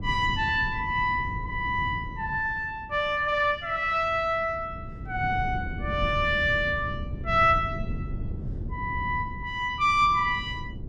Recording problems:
wind noise; below 160 Hz, SNR 10 dB

